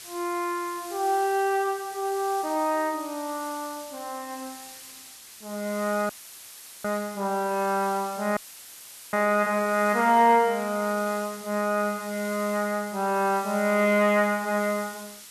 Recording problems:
background hiss; slope +2 dB per octave, SNR 16 dB
audio cutting out; at 6 s for 1 s and at 8.5 s for 1 s; filled with static

